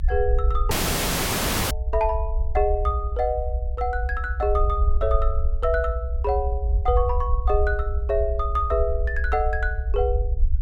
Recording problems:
low-frequency rumble; below 68 Hz, SNR 0 dB
audio cutting out; at 0.5 s for 1 s

